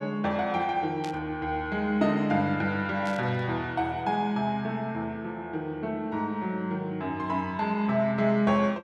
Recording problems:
burst of static; at 1 s and at 3 s; peak -9 dB vs average level

